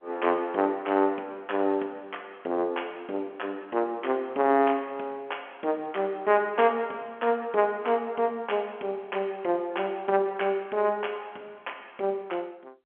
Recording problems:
phone line; 260 Hz to 3.3 kHz, G.711

